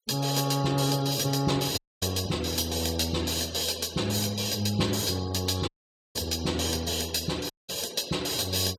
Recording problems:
noise reduction artefacts; signal-to-artefact ratio 20 dB
dropout; at 2 s, at 5.5 s and at 7.5 s

